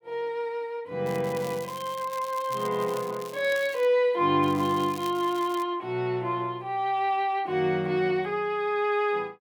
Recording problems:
crackle; from 1 to 4 s and from 4.5 to 5.5 s; loose cable, SNR 18 dB

